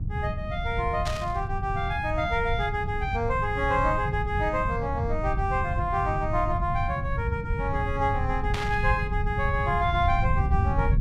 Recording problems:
electrical hum; 50 Hz, harmonics up to 500 Hz, SNR 14 dB
low-frequency rumble; below 120 Hz, SNR 3 dB
burst of static; at 1 s and at 8.5 s; peak -2 dB vs average level

